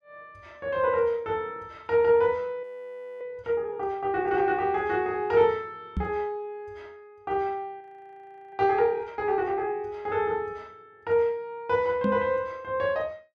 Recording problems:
audio freezing; at 2.5 s for 0.5 s and at 8 s for 0.5 s
microphone thump; at 6 s and at 12 s; peak +2 dB vs average level

